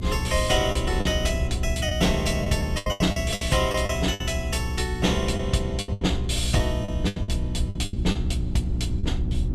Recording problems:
electrical hum; 60 Hz, harmonics up to 360 Hz, SNR 5 dB
low-frequency rumble; below 84 Hz, SNR 5 dB
packet loss; 11% of the sound replaced, filled with the last packet

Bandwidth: 15 kHz